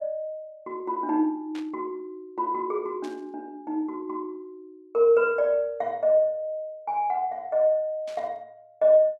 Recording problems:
static burst; at 1.5 s, at 3 s and at 8 s; peak -14 dB vs average level

